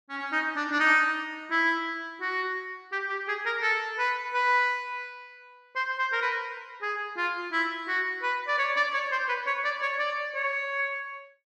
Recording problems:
none

